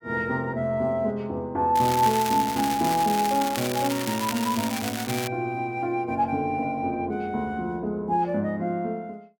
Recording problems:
crackling; from 2 to 5.5 s; loose cable, SNR 7 dB

